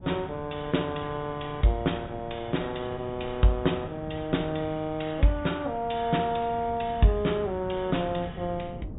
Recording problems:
treble missing; nothing above 4 kHz
wind on the microphone; below 240 Hz, SNR 15 dB

